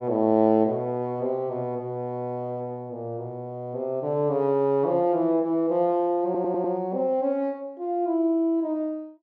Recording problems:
audio stuttering; at 6.5 s

